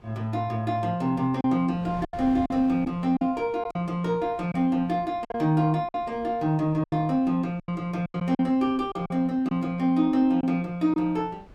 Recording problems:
wind on the microphone; below 440 Hz, SNR 23 dB
packet loss; 7% of the sound replaced, filled with silence

